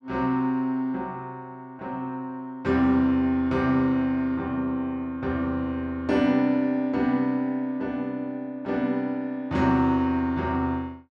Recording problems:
none

